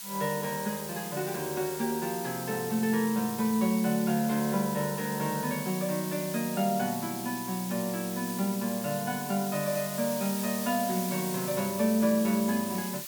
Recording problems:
background hiss; slope +2 dB per octave, SNR 7 dB

